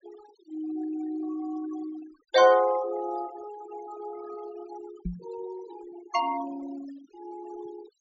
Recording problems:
low-pass filter; nothing above 8 kHz
noise reduction artefacts; signal-to-artefact ratio 17 dB
microphone bump; at 5 s; peak -1 dB vs average level

